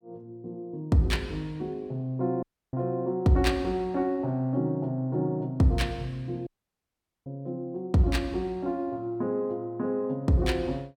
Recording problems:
dropout; at 2.5 s and at 6.5 s for 1 s

